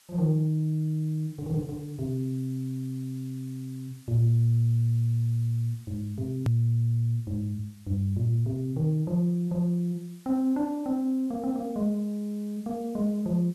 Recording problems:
background hiss; slope +2 dB per octave, SNR 28 dB
hard cut with a click; at 6.5 s

